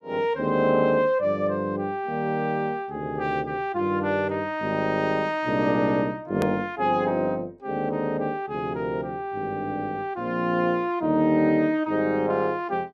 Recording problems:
click at an edit; at 6.5 s

